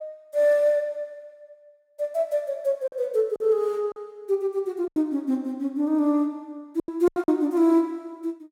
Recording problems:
packet loss; 5% of the sound replaced, filled with silence

